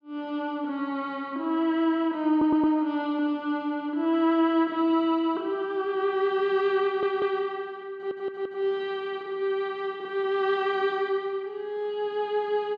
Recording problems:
stutter; at 2.5 s, at 7 s and at 8 s

